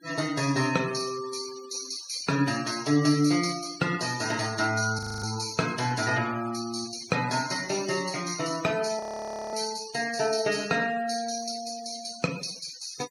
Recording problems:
noise reduction artefacts; signal-to-artefact ratio 15 dB
frozen audio; at 5 s and at 9 s for 0.5 s

